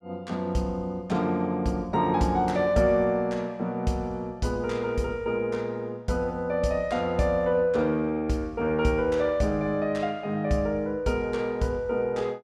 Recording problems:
none

